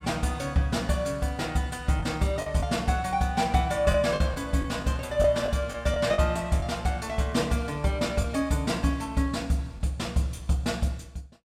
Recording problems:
lost packets; 3% of the sound replaced, filled with the last packet

